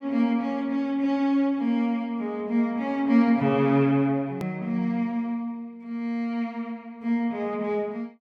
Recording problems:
click at an edit; at 4.5 s

